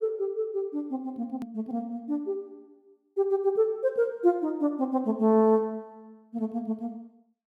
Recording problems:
hard cut with a click; at 1.5 s

